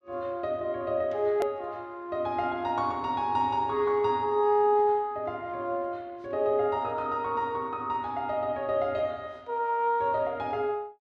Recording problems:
hard cut with a click; at 1.5 s

